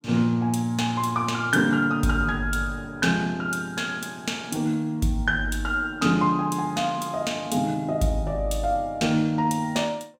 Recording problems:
none

